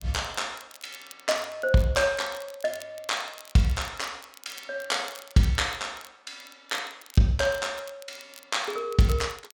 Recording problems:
crackle; vinyl, SNR 21 dB

